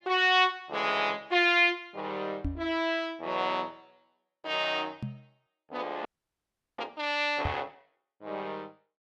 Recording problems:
microphone bump; at 2.5 s, at 5 s and at 7.5 s; peak -2 dB vs average level
audio freezing; at 6 s for 0.5 s

